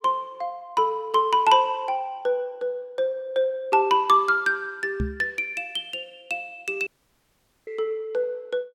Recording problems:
microphone thump; at 5 s; peak +1 dB vs average level
audio cutting out; at 7 s for 1 s

